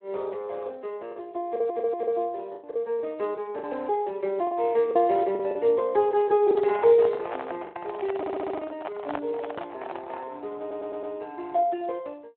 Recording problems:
telephone audio; 340 Hz to 3.3 kHz, Speex
lost packets; 5% of the sound replaced, filled with the last packet
stutter; at 1.5 s, at 8 s and at 11 s
handling noise; from 6.5 to 10 s; peak -2 dB vs average level

